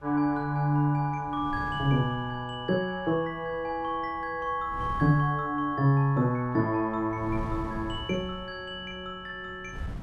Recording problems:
wind on the microphone; below 160 Hz, SNR 17 dB

